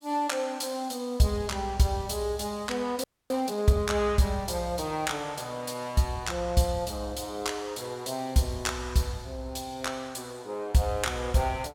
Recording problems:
audio freezing; at 3 s

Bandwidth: 17 kHz